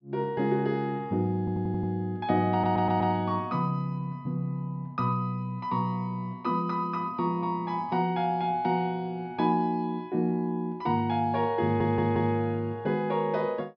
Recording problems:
treble missing; nothing above 5.5 kHz
stutter; at 1.5 s, at 2.5 s and at 12 s

